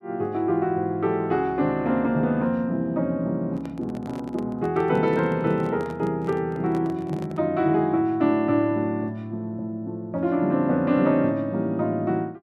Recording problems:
microphone handling noise; from 3.5 to 7.5 s; peak -10 dB vs average level

